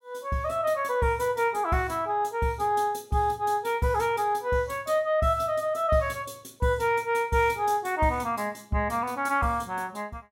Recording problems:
none

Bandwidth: 16.5 kHz